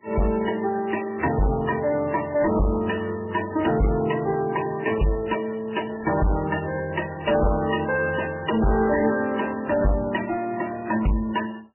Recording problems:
codec artefacts; MP3, then MP3, log-spectral distance 5 dB, nothing above 2.9 kHz
distorted audio; soft clipping, signal-to-distortion ratio 7 dB

